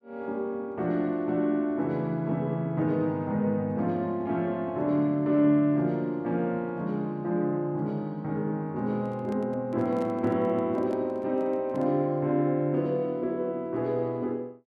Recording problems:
handling noise; from 9 to 12 s; peak -9 dB vs average level

